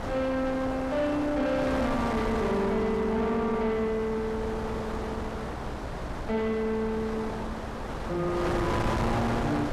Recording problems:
distorted audio; soft clipping, signal-to-distortion ratio 11 dB
hum; 60 Hz, harmonics up to 300 Hz, SNR 17 dB
wind on the microphone; below 1.1 kHz, SNR 5 dB

